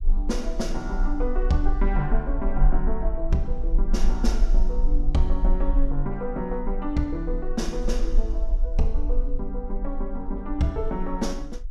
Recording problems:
rumble; below 38 Hz, strongest tone 20 Hz, SNR -1 dB

